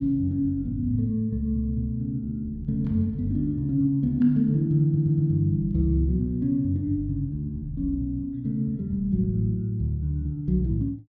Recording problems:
stutter; at 5 s

